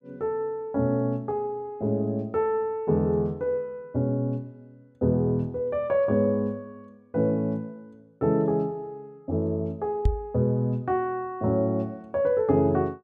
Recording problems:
microphone bump; at 10 s; peak +7 dB vs average level

